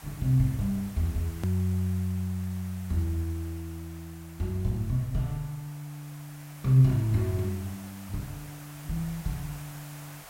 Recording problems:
hiss; SNR 19 dB
click at an edit; at 1.5 s

